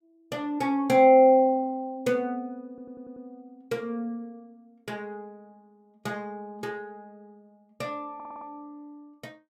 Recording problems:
audio stuttering; at 2.5 s and at 8 s

